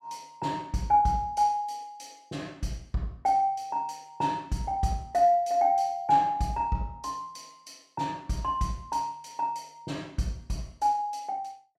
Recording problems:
none

